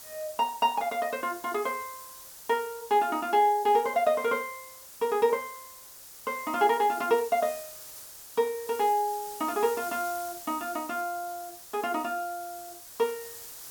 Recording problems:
background hiss; SNR 14 dB

